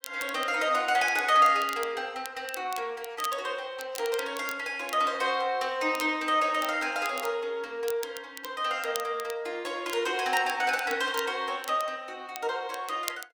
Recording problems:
crackle; vinyl, SNR 15 dB

